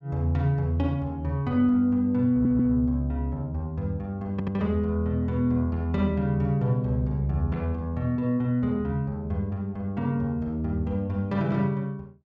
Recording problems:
stutter; at 2.5 s and at 4.5 s

